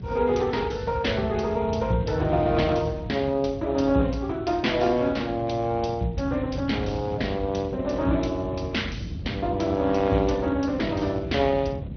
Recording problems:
low-pass filter; nothing above 6.2 kHz
lossy compression; Speex, log-spectral distance 3 dB
rumble; below 170 Hz, SNR 9 dB

